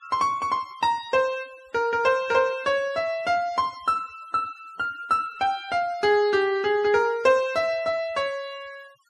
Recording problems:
noise reduction artefacts; signal-to-artefact ratio 26 dB

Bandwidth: 12.5 kHz